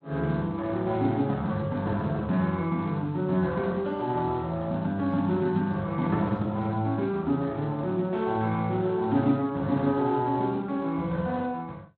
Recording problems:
codec artefacts; Speex, log-spectral distance 2 dB, nothing above 4.1 kHz

